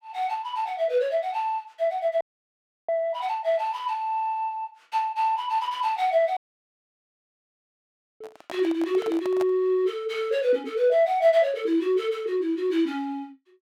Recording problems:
audio cutting out; at 2 s for 0.5 s and at 6.5 s for 2 s
handling noise; from 8 to 9.5 s; peak -5 dB vs average level

